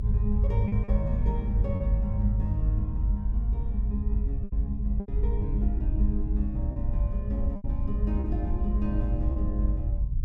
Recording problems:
low-frequency rumble; below 70 Hz, strongest tone 50 Hz, SNR -5 dB
packet loss; 5% of the sound replaced, filled with repeated pitch periods

